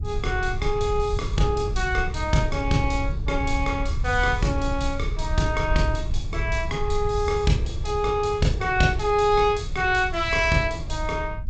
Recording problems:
codec artefacts; G.722, log-spectral distance 3 dB, nothing above 7.8 kHz
rumble; below 82 Hz, SNR 6 dB

